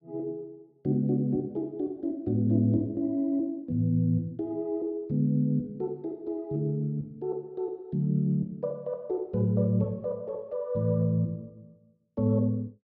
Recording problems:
none

